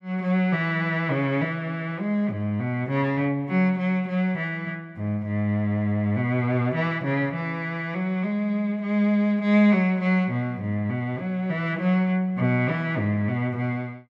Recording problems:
none

